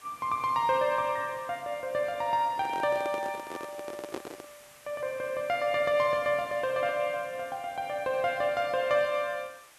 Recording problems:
background hiss; SNR 23 dB
handling noise; from 2.5 to 4.5 s; peak -3 dB vs average level

